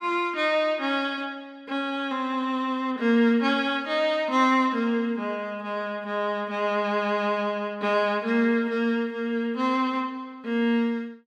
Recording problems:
none

